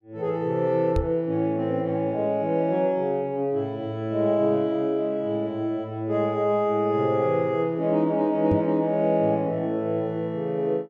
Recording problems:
microphone thump; at 1 s and at 8.5 s; peak +1 dB vs average level

